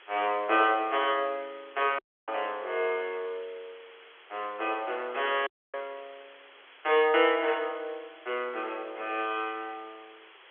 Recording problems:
phone line; 340 Hz to 3.4 kHz, G.711
hiss; SNR 22 dB
audio cutting out; at 2 s and at 5.5 s

